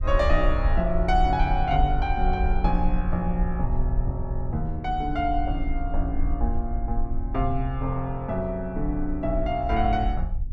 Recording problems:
rumble; below 56 Hz, SNR 2 dB

